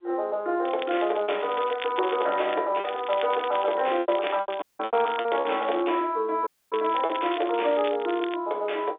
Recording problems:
phone line; 300 Hz to 3.7 kHz, G.711
packet loss; 6% of the sound replaced, filled with repeated pitch periods
crackling; 4 times, first at 0.5 s; loose cable, SNR 14 dB
dropout; at 4.5 s and at 6.5 s

